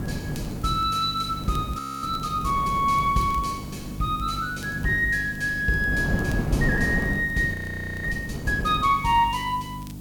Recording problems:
mains hum; 50 Hz, harmonics up to 300 Hz, SNR 13 dB
hiss; SNR 24 dB
wind noise; below 330 Hz, SNR 8 dB
crackling; vinyl, SNR 29 dB
audio freezing; at 2 s and at 7.5 s

